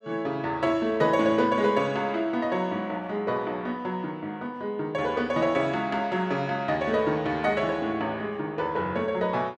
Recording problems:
none

